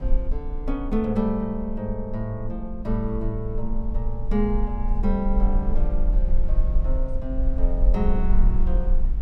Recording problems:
rumble; below 42 Hz, strongest tone 18 Hz, SNR -2 dB

